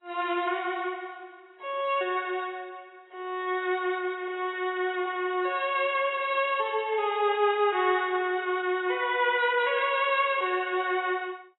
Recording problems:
lossy codec; AAC, log-spectral distance 3 dB, nothing above 3.9 kHz

